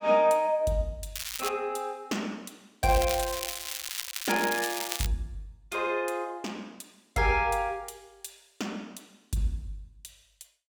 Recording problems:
crackle; at 1 s and from 3 to 5 s; loose cable, SNR 4 dB

